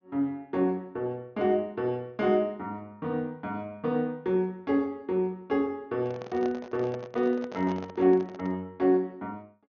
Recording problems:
low-pass filter; nothing above 6.6 kHz
microphone handling noise; from 6 to 8.5 s; peak -8 dB vs average level

